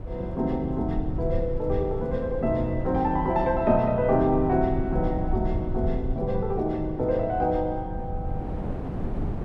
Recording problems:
rumble; below 100 Hz, SNR 9 dB
wind noise; below 310 Hz, SNR 12 dB

